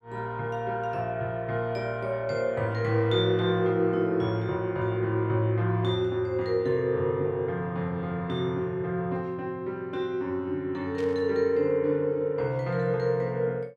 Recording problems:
static burst; at 11 s; peak -13 dB vs average level

